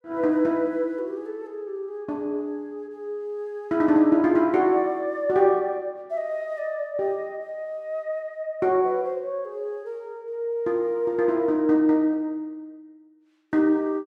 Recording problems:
none

